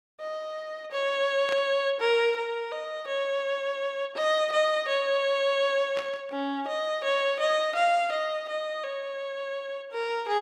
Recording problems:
burst of static; at 1.5 s and at 6 s; peak -5 dB vs average level

